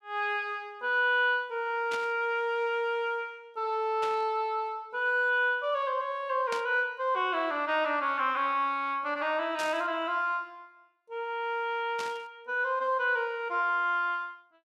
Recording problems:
burst of static; 5 times, first at 2 s; peak -4 dB vs average level

